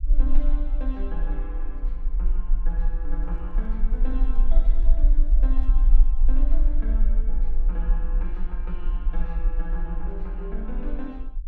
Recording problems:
low-frequency rumble; below 38 Hz, strongest tone 20 Hz, SNR -13 dB
microphone handling noise; from 3 to 6.5 s; peak -12 dB vs average level

